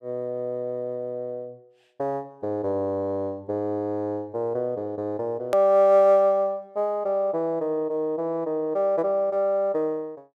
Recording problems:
edit click; at 5.5 s

